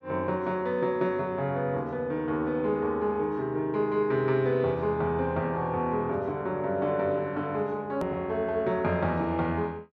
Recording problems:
click at an edit; at 8 s

